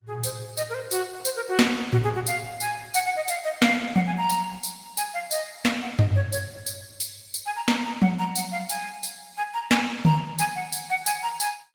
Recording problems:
lossy compression; Opus, log-spectral distance 6 dB, nothing above 19 kHz

